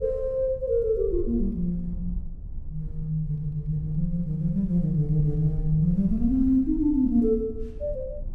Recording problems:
low-frequency rumble; below 58 Hz, strongest tone 20 Hz, SNR 12 dB

